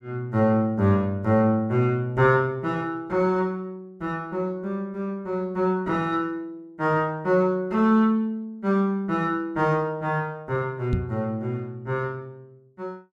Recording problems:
knock on the microphone; at 11 s; peak +2 dB vs average level

